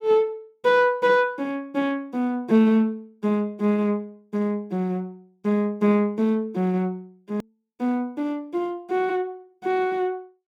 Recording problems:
edit click; at 7.5 s

